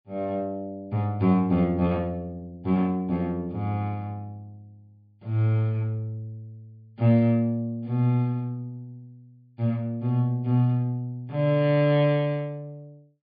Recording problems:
low-pass filter; nothing above 4.9 kHz

